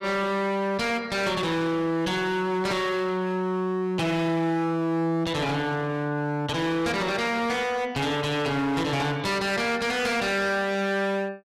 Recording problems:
distortion; hard clipping, signal-to-distortion ratio 6 dB

